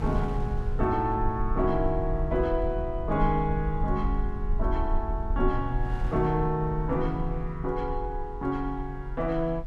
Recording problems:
low-frequency rumble; below 52 Hz, strongest tone 26 Hz, SNR 5 dB
wind noise; below 230 Hz, SNR 18 dB

